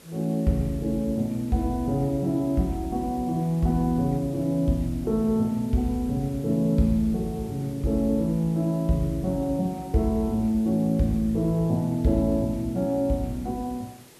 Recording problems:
hiss; slope -4 dB per octave, SNR 24 dB

